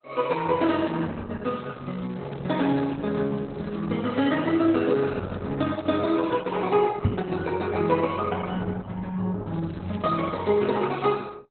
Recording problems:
lossy compression; Opus, log-spectral distance 5 dB, nothing above 4 kHz
crackling; from 1.5 to 4 s, from 4 to 6.5 s and from 9.5 to 11 s; loose cable, SNR 26 dB
microphone bump; at 7 s; peak +9 dB vs average level

